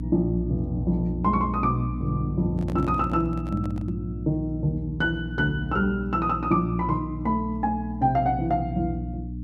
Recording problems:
electrical hum; 60 Hz, harmonics up to 300 Hz, SNR 6 dB
microphone handling noise; from 2.5 to 4 s; peak -9 dB vs average level

